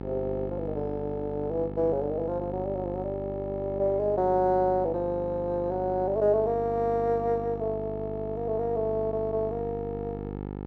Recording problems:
hum; 50 Hz, harmonics up to 1.3 kHz, SNR 9 dB

